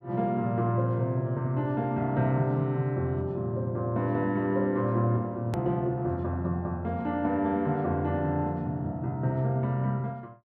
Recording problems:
hard cut with a click; at 5.5 s

